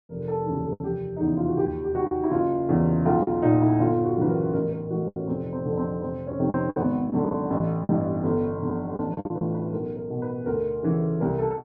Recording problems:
lost packets; 6% of the sound replaced, filled with the last packet

